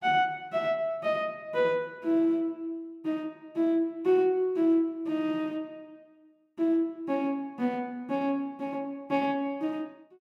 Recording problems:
none

